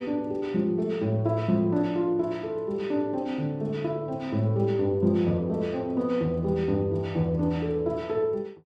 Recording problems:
none

